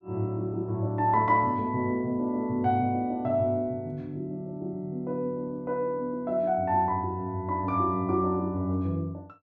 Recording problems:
none

